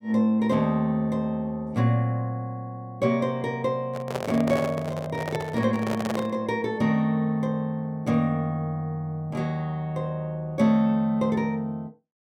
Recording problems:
microphone handling noise; from 4 to 6.5 s; peak 0 dB vs average level

